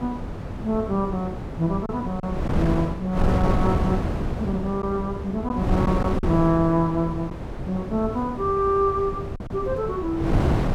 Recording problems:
wind noise; below 350 Hz, SNR 3 dB
lost packets; 1.7% of the sound replaced, filled with silence

